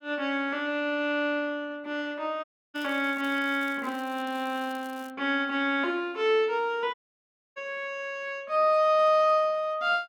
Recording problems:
dropout; at 2.5 s and at 7 s for 0.5 s
crackle; from 2.5 to 5 s; loose cable, SNR 25 dB

